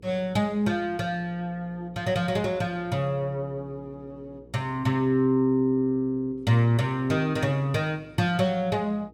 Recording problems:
hum; 60 Hz, harmonics up to 480 Hz, SNR 26 dB

